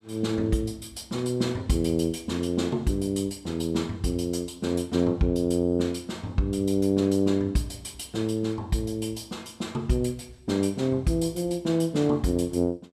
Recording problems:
none

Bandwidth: 15 kHz